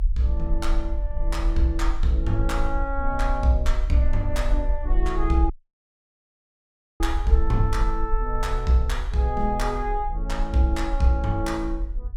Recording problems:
low-frequency rumble; below 46 Hz, SNR 3 dB
dropout; at 5.5 s for 1.5 s

